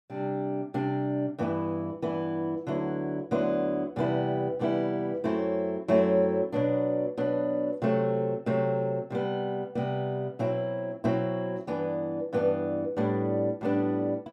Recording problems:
none

